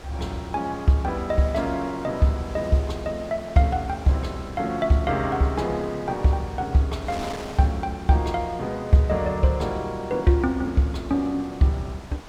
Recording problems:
wind on the microphone; below 2.1 kHz, SNR 17 dB

